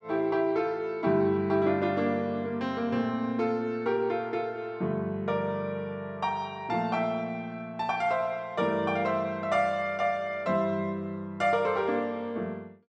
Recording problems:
none

